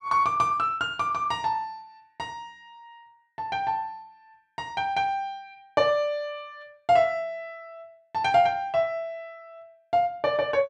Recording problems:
none

